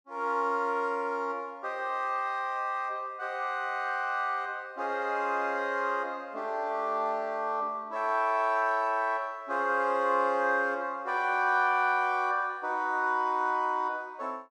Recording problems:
none

